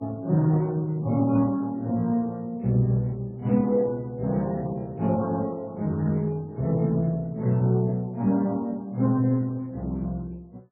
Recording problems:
codec artefacts; Speex, then MP3, log-spectral distance 2 dB

